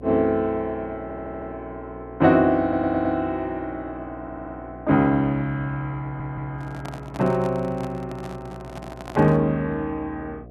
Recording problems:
hum; 60 Hz, harmonics up to 720 Hz, SNR 19 dB
audio stuttering; 4 times, first at 1 s
microphone handling noise; from 6 to 9.5 s; peak -8 dB vs average level

